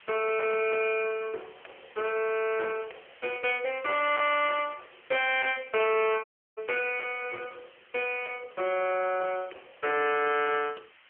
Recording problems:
phone line; 320 Hz to 3.2 kHz, AMR-NB
distorted audio; hard clipping, signal-to-distortion ratio 13 dB
hiss; SNR 26 dB
audio cutting out; at 6 s

